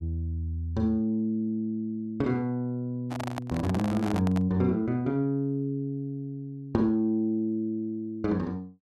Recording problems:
microphone handling noise; from 3 to 4.5 s; peak -2 dB vs average level

